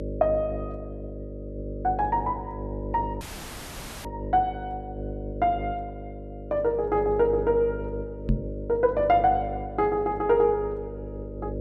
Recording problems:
hum; 50 Hz, harmonics up to 600 Hz, SNR 10 dB
dropout; at 3 s for 1 s
microphone thump; at 8.5 s; peak +4 dB vs average level

